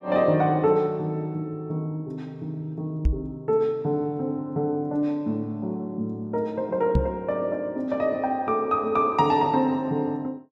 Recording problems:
microphone bump; at 3 s and at 7 s; peak +7 dB vs average level

